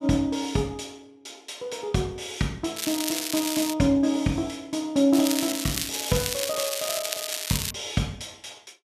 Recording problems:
crackle; at 3 s and from 5 to 7.5 s; loose cable, SNR 2 dB

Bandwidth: 14 kHz